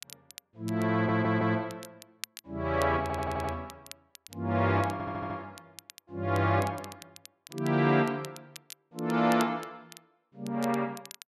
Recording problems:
crackle; vinyl, SNR 19 dB
stutter; at 1 s, at 3 s and at 5 s

